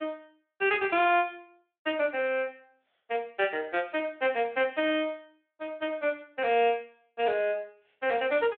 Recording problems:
phone line; 280 Hz to 3.6 kHz, Speex

